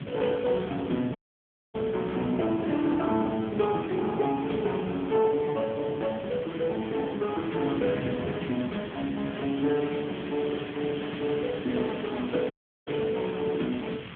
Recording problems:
phone line; 110 Hz to 3.4 kHz, AMR-NB
hiss; SNR 16 dB
wind on the microphone; below 260 Hz, SNR 11 dB
dropout; at 1 s for 0.5 s and at 13 s

